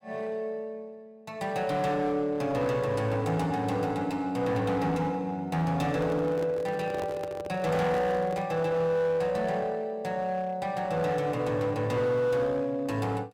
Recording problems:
distorted audio; hard clipping, uneven, signal-to-distortion ratio 11 dB
microphone handling noise; from 6 to 8.5 s; peak -5 dB vs average level

